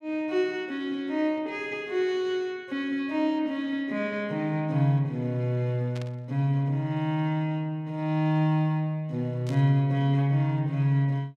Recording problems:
burst of static; at 6 s and at 9.5 s; peak -13 dB vs average level

